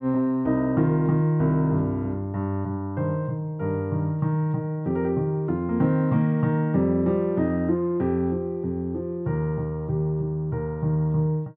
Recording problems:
none

